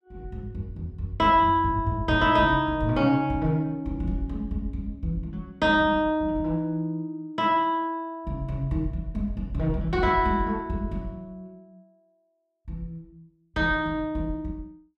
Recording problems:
none

